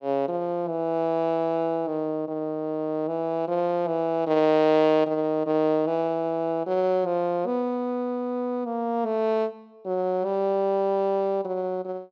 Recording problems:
none

